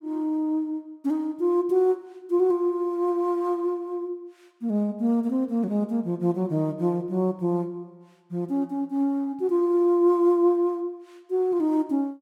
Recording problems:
none

